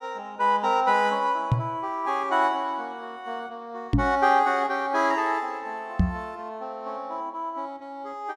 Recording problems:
knock on the microphone; at 1.5 s, at 4 s and at 6 s; peak +8 dB vs average level

